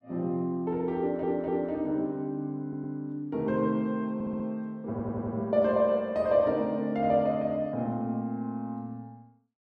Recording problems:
stutter; 4 times, first at 1 s

